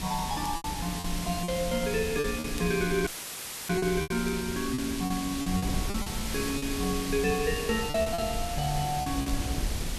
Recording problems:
hiss; SNR 6 dB
wind noise; below 150 Hz, SNR 8 dB
crackle; vinyl, SNR 25 dB
packet loss; 9% of the sound replaced, filled with repeated pitch periods
dropout; at 3 s for 0.5 s; filled with static

